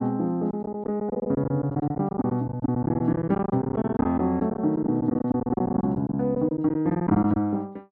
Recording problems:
lost packets; 15% of the sound replaced, filled with silence

